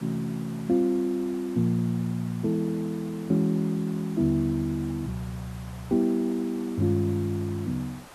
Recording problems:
background hiss; SNR 20 dB

